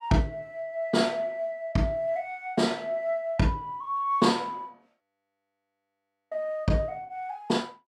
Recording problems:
frozen audio; at 5 s for 1.5 s

